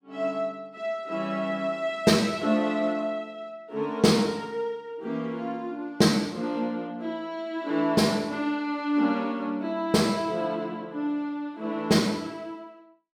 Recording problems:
none

